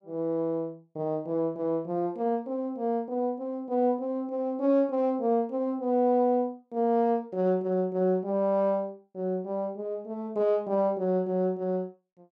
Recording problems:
none

